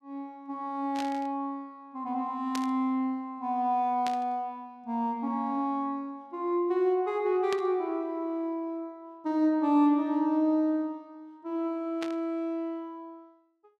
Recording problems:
static burst; 5 times, first at 1 s; peak -3 dB vs average level

